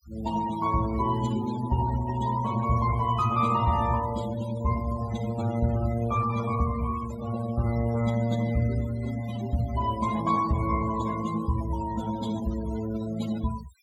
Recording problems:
noise reduction artefacts; signal-to-artefact ratio 14 dB

